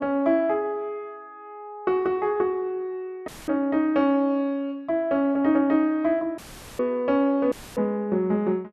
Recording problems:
audio cutting out; at 3.5 s, at 6.5 s and at 7.5 s; filled with static

